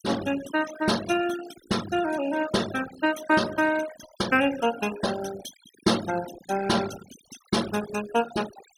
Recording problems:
denoising artefacts; signal-to-artefact ratio 13 dB

